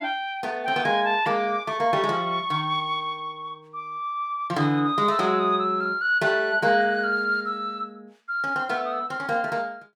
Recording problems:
none

